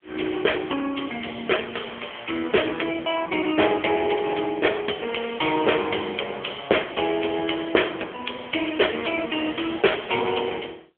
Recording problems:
telephone audio; 260 Hz to 3.3 kHz, AMR-NB

